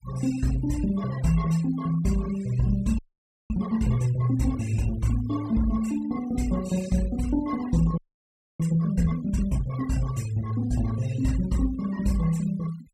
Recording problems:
noise reduction artefacts; signal-to-artefact ratio 19 dB
audio freezing; at 3 s for 0.5 s and at 8 s for 0.5 s

